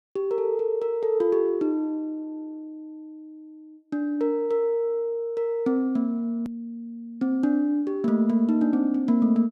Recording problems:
hard cut with a click; at 6.5 s

